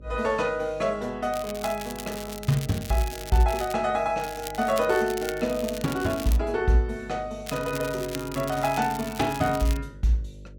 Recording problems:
hum; 50 Hz, harmonics up to 600 Hz, SNR 19 dB
crackle; from 1.5 to 3.5 s, from 4 to 6.5 s and from 7.5 to 10 s; loose cable, SNR 13 dB

